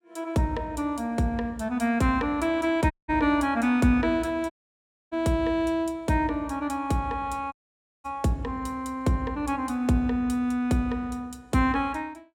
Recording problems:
audio cutting out; at 3 s, at 4.5 s for 0.5 s and at 7.5 s for 0.5 s

